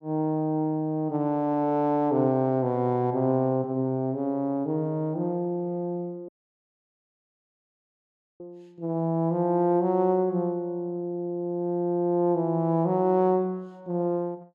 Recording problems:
audio cutting out; at 6.5 s for 2 s

